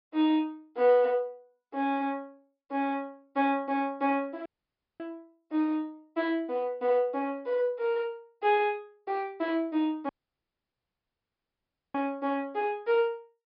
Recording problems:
treble cut off; nothing above 5.5 kHz
dropout; at 4.5 s for 0.5 s and at 10 s for 2 s

